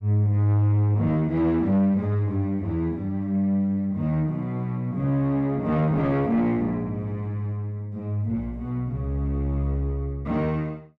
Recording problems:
distortion; soft clipping, signal-to-distortion ratio 10 dB

